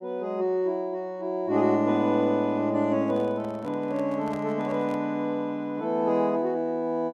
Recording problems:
microphone handling noise; from 3 to 5 s; peak -10 dB vs average level

